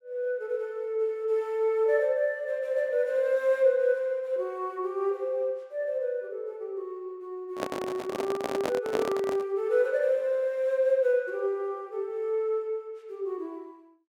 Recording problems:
microphone handling noise; from 7.5 to 9.5 s; peak +1 dB vs average level

